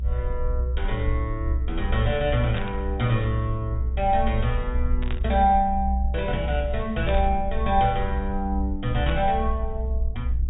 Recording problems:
low-pass filter; nothing above 4 kHz
rumble; below 64 Hz, strongest tone 62 Hz, SNR 3 dB
burst of static; 4 times, first at 2.5 s; peak -5 dB vs average level

